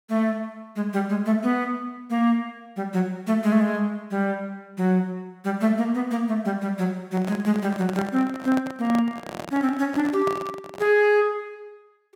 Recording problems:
handling noise; from 7 to 11 s; peak -4 dB vs average level

